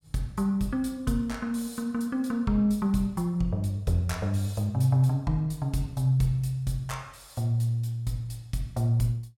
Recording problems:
none

